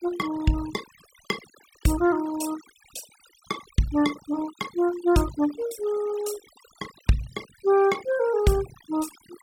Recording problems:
denoising artefacts; signal-to-artefact ratio 17 dB

